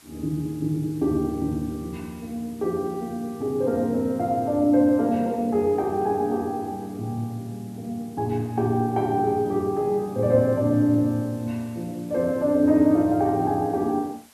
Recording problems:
hiss; slope -1 dB per octave, SNR 27 dB

